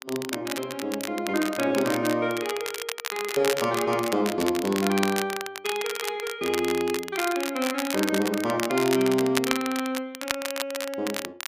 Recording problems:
crackle; vinyl, SNR 6 dB

